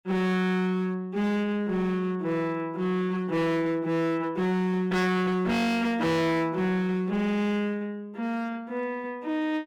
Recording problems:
distortion; hard clipping, signal-to-distortion ratio 6 dB

